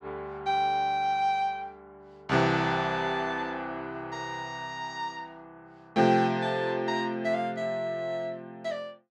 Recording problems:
none

